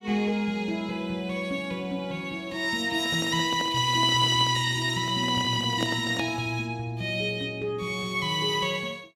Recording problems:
microphone handling noise; from 3 to 6.5 s; peak -2 dB vs average level

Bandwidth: 16.5 kHz